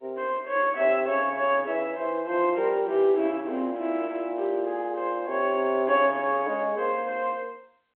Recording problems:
phone line; 260 Hz to 3.3 kHz, G.711

